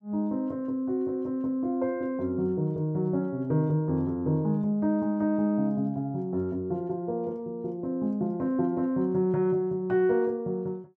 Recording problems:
none

